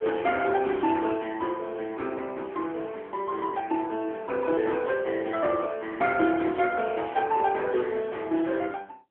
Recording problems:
phone line; 260 Hz to 3.4 kHz, AMR-NB

